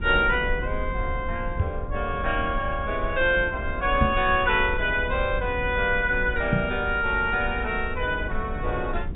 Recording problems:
treble cut off; nothing above 4 kHz
low-frequency rumble; below 76 Hz, SNR 9 dB
knock on the microphone; at 1.5 s, at 4 s and at 6.5 s; peak +5 dB vs average level

